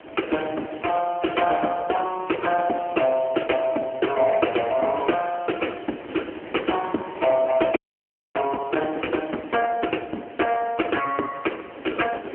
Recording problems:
phone line; 240 Hz to 3.1 kHz, AMR-NB
background hiss; SNR 26 dB
wind on the microphone; below 880 Hz, SNR 15 dB
frozen audio; at 8 s for 0.5 s

